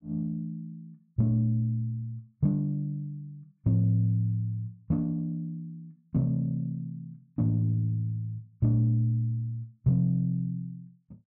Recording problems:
none

